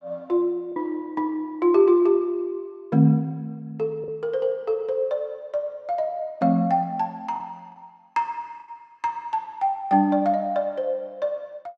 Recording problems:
packet loss; 1.5% of the sound replaced, filled with the last packet

